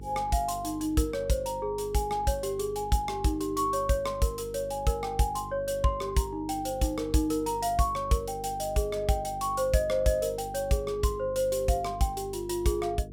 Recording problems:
hum; 50 Hz, harmonics up to 450 Hz, SNR 15 dB

